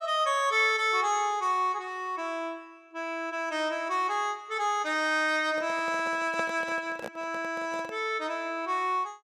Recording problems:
handling noise; from 5.5 to 8 s; peak -4 dB vs average level

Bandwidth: 14.5 kHz